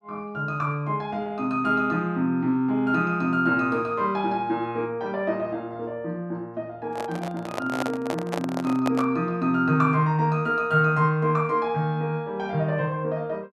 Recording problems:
microphone handling noise; from 7 to 9 s; peak +1 dB vs average level

